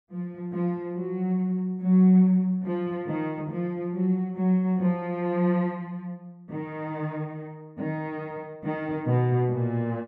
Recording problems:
none

